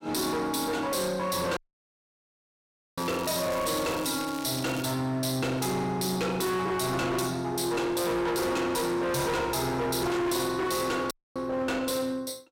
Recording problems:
distorted audio; hard clipping, uneven, signal-to-distortion ratio 6 dB
audio cutting out; at 1.5 s for 1.5 s and at 11 s
crackle; from 3 to 5 s; loose cable, SNR 12 dB

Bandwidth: 16 kHz